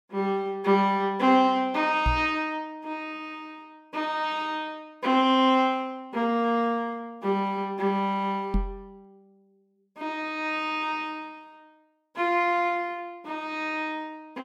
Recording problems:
microphone bump; at 2 s and at 8.5 s; peak +3 dB vs average level

